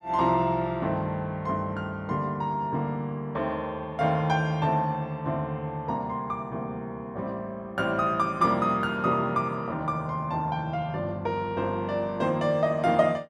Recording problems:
none

